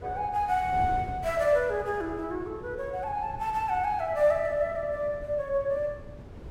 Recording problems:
wind noise; below 320 Hz, SNR 15 dB

